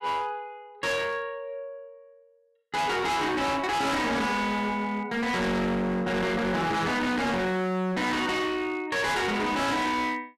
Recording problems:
distortion; hard clipping, signal-to-distortion ratio 6 dB

